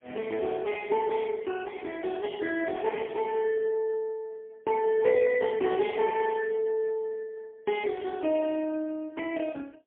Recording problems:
telephone audio; 260 Hz to 3.1 kHz, AMR-NB, then MP3

